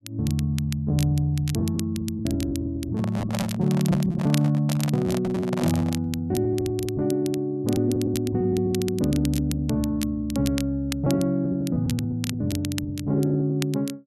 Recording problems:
crackle; vinyl, SNR 14 dB
packet loss; 12% of the sound replaced, filled with repeated pitch periods
microphone handling noise; from 3 to 6 s; peak -1 dB vs average level

